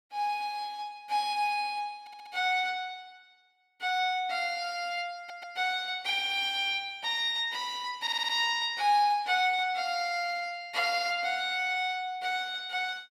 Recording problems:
stutter; at 2 s, at 5 s and at 8 s

